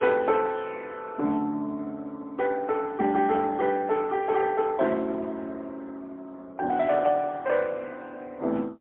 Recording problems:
phone line; 190 Hz to 3.5 kHz, AMR-NB, then MP3

